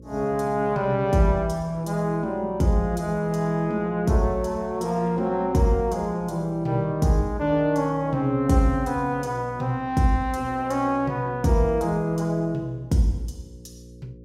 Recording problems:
hum; 60 Hz, harmonics up to 540 Hz, SNR 21 dB

